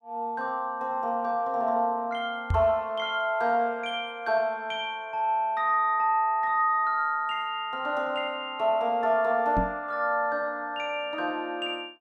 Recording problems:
microphone bump; at 2.5 s and at 9.5 s; peak +3 dB vs average level

